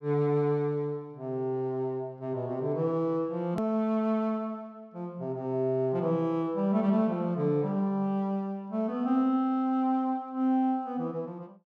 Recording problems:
hard cut with a click; at 3.5 s

